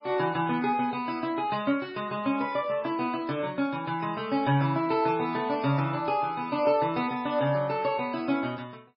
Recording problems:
lossy compression; MP3, log-spectral distance 2 dB, nothing above 4.9 kHz

